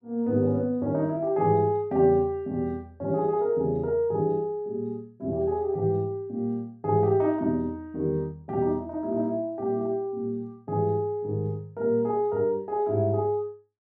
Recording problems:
none

